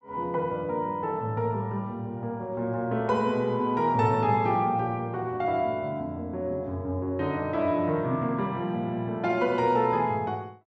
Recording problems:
none

